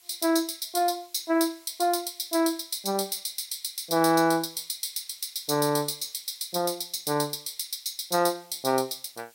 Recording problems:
hiss; slope +2 dB per octave, SNR 27 dB

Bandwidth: 16 kHz